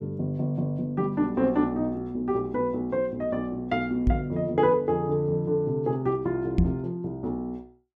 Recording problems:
microphone bump; at 4 s and at 6.5 s; peak +8 dB vs average level

